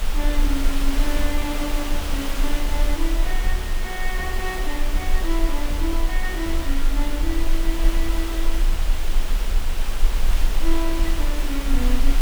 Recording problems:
background hiss; slope -3 dB per octave, SNR 2 dB
rumble; below 34 Hz, strongest tone 20 Hz, SNR -3 dB

